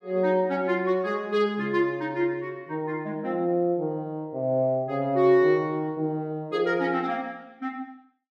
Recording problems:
none

